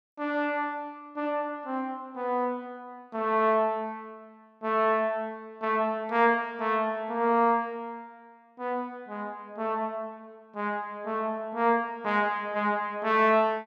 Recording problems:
none

